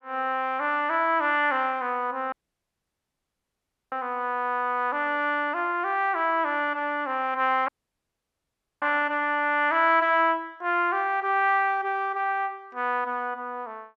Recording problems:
dropout; at 2.5 s for 1.5 s and at 7.5 s for 1 s

